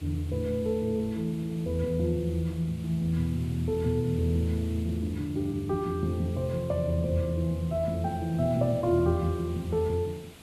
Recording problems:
background hiss; SNR 21 dB

